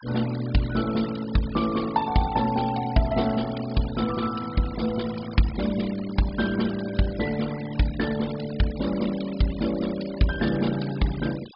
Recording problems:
treble missing; nothing above 5.5 kHz
denoising artefacts; signal-to-artefact ratio 15 dB

